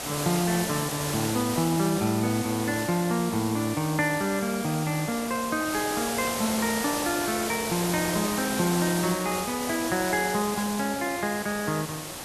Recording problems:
background hiss; slope -3 dB per octave, SNR 4 dB

